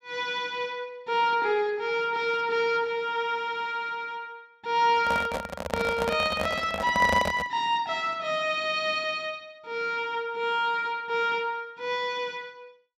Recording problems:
microphone handling noise; from 5 to 7.5 s; peak +4 dB vs average level

